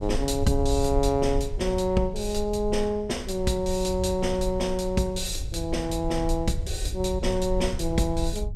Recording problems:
low-frequency rumble; below 70 Hz, SNR 7 dB

